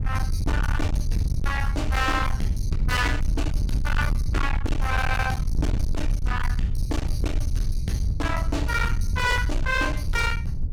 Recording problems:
distorted audio; hard clipping, signal-to-distortion ratio 7 dB
rumble; below 88 Hz, SNR 0 dB
wind noise; below 130 Hz, SNR 6 dB

